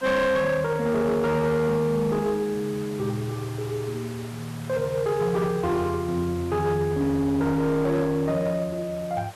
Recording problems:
distortion; hard clipping, uneven, signal-to-distortion ratio 11 dB
hiss; SNR 18 dB

